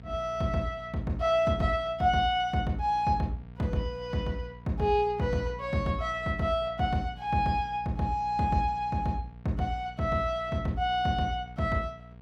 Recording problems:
electrical hum; 60 Hz, harmonics up to 960 Hz, SNR 18 dB

